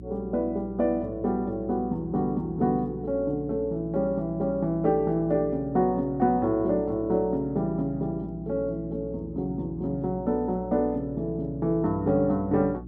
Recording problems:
electrical hum; 60 Hz, harmonics up to 360 Hz, SNR 14 dB

